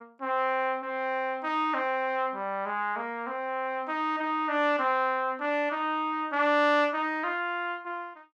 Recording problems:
none

